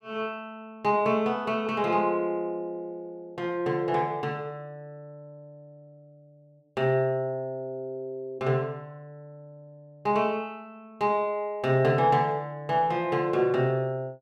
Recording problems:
none

